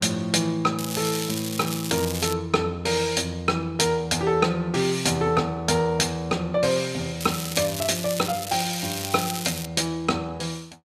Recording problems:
crackling; from 1 to 2.5 s and from 7 to 9.5 s; loose cable, SNR 7 dB

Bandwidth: 14.5 kHz